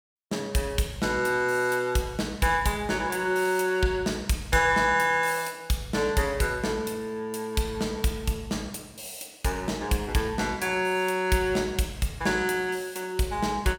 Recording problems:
none

